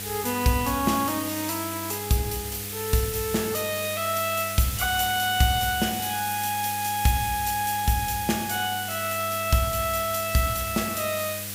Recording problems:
hum; 50 Hz, harmonics up to 1.2 kHz, SNR 15 dB
background hiss; SNR 6 dB

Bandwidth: 15.5 kHz